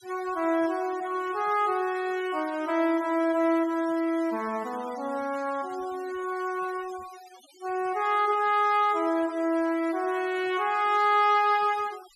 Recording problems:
noise reduction artefacts; signal-to-artefact ratio 21 dB

